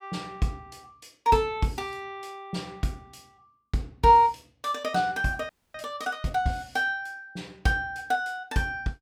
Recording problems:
frozen audio; at 5.5 s

